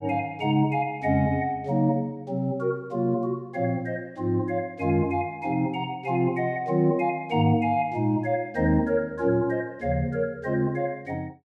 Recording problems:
none

